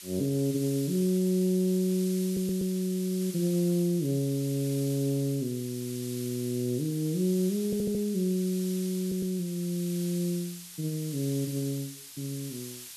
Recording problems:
hiss; slope +4 dB per octave, SNR 12 dB
stutter; at 2.5 s, at 7.5 s and at 9 s

